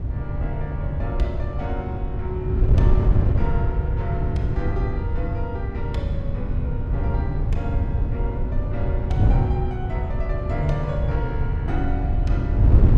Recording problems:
wind on the microphone; below 110 Hz, SNR -7 dB

